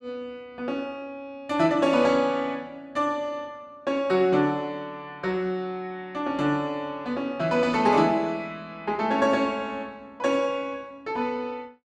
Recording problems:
none

